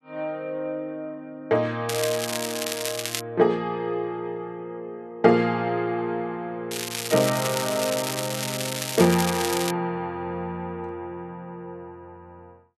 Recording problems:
crackling; from 2 to 3 s and from 6.5 to 9.5 s; loose cable, SNR 3 dB

